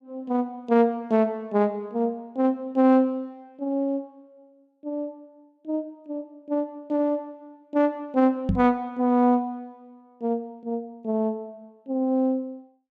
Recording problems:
knock on the microphone; at 8.5 s; peak +5 dB vs average level

